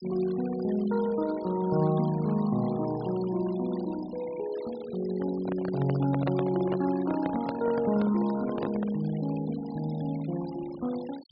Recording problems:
low-pass filter; nothing above 5.5 kHz
noise reduction artefacts; signal-to-artefact ratio 18 dB
handling noise; from 5 to 9 s; peak 0 dB vs average level

